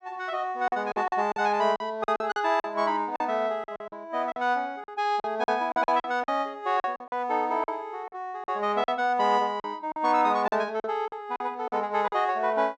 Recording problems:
packet loss; 11% of the sound replaced, filled with silence

